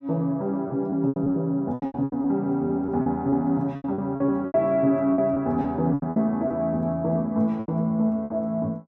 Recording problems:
lost packets; 13% of the sound replaced, filled with repeated pitch periods

